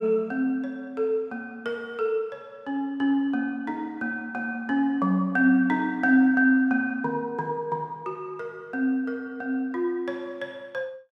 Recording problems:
none

